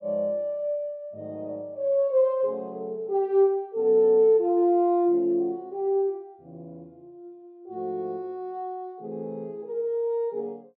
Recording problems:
none

